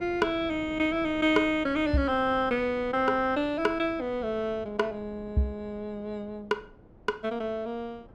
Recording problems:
wind on the microphone; below 430 Hz, SNR 20 dB

